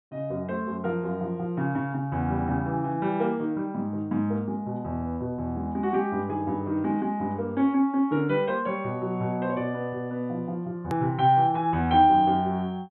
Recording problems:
low-pass filter; nothing above 4 kHz
edit click; at 11 s

